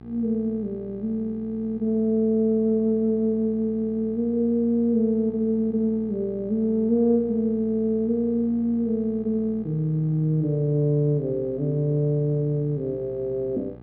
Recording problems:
electrical hum; 60 Hz, harmonics up to 1.3 kHz, SNR 20 dB

